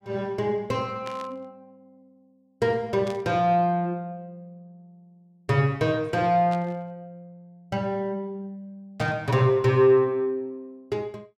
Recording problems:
burst of static; 4 times, first at 1 s; peak -11 dB vs average level

